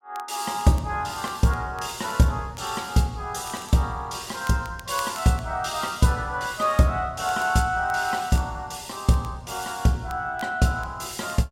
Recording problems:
crackling; vinyl, SNR 24 dB

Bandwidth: 16 kHz